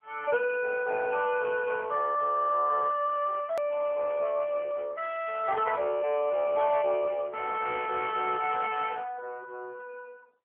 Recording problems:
phone line; 320 Hz to 3 kHz, AMR-NB
hard cut with a click; at 3.5 s

